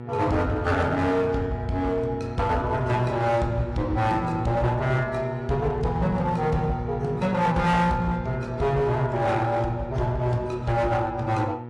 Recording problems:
lossy codec; AAC, log-spectral distance 2 dB, nothing above 11.3 kHz
distorted audio; hard clipping, uneven, signal-to-distortion ratio 11 dB
hum; 60 Hz, harmonics up to 1.4 kHz, SNR 10 dB

